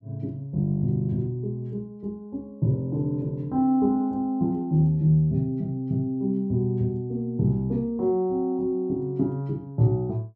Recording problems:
none

